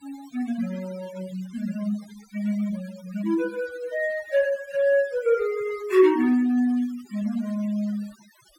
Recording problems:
denoising artefacts; signal-to-artefact ratio 20 dB

